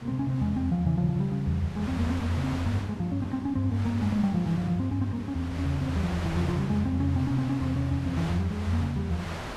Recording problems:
wind on the microphone; below 2 kHz, SNR 13 dB

